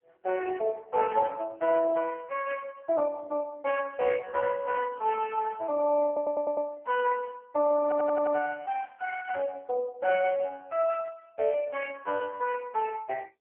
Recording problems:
telephone audio; 300 Hz to 2.9 kHz, AMR-NB
audio stuttering; at 6 s and at 8 s

